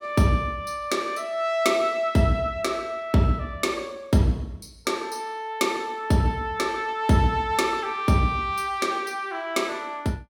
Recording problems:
none

